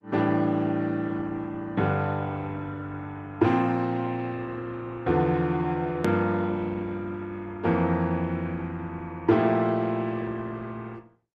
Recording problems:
lossy compression; Opus, log-spectral distance 2 dB, nothing above 13.1 kHz
click at an edit; at 6 s

